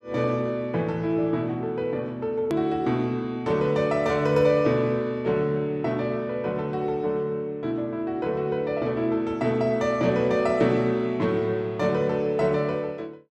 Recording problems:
hard cut with a click; at 2.5 s

